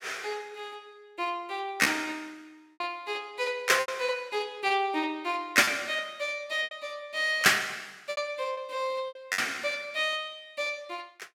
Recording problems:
packet loss; 5% of the sound replaced, filled with repeated pitch periods

